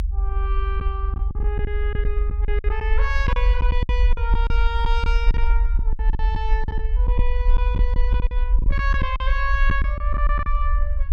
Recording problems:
rumble; below 50 Hz, SNR -6 dB
packet loss; 10% of the sound replaced, filled with silence

